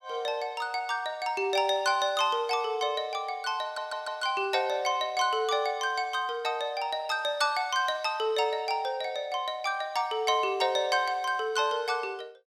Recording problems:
audio stuttering; at 3.5 s

